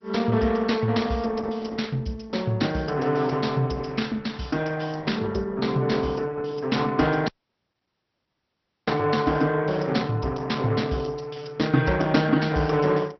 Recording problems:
treble missing; nothing above 5.6 kHz
codec artefacts; Opus, log-spectral distance 4 dB
audio cutting out; at 7.5 s for 1.5 s

